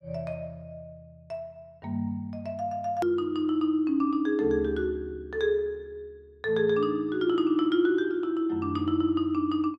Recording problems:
hard cut with a click; at 3 s

